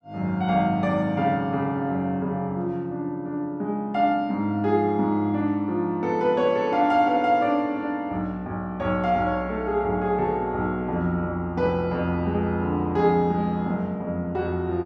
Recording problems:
none

